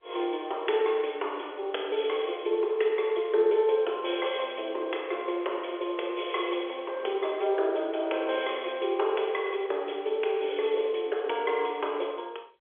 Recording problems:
telephone audio; 340 Hz to 3.5 kHz, G.711

